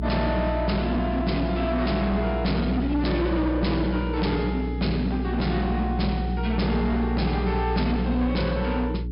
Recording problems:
treble missing; nothing above 5.5 kHz
distorted audio; hard clipping, uneven, signal-to-distortion ratio 6 dB
hum; 60 Hz, harmonics up to 420 Hz, SNR 4 dB

